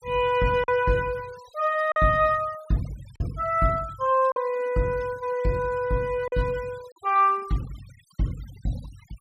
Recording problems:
denoising artefacts; signal-to-artefact ratio 24 dB
packet loss; 2% of the sound replaced, filled with silence

